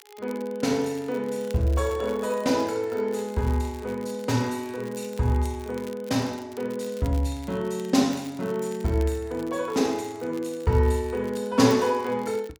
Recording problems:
crackling; vinyl, SNR 23 dB

